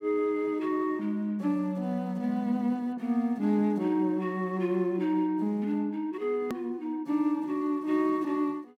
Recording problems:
edit click; at 6.5 s

